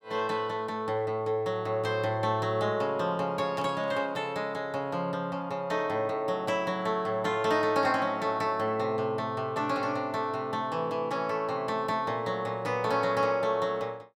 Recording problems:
burst of static; at 3.5 s; peak -14 dB vs average level

